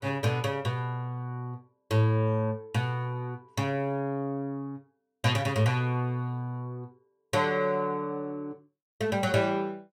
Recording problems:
none

